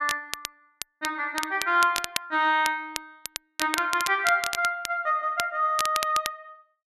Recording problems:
crackling; vinyl, SNR 8 dB

